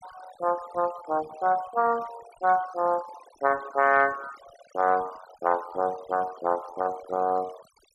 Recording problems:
noise reduction artefacts; signal-to-artefact ratio 19 dB

